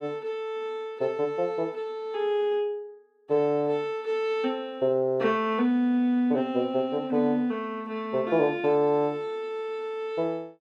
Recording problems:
none

